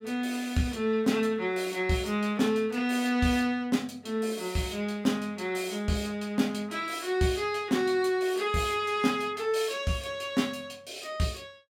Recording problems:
none

